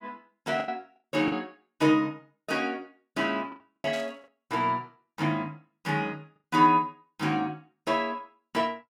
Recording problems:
lost packets; 3% of the sound replaced, filled with the last packet
burst of static; at 4 s; peak -10 dB vs average level

